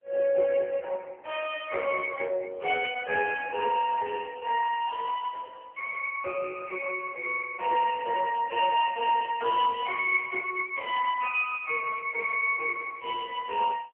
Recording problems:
telephone audio; 370 Hz to 2.8 kHz, AMR-NB

